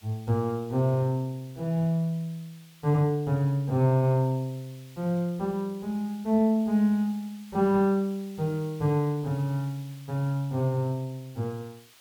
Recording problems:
hiss; SNR 26 dB

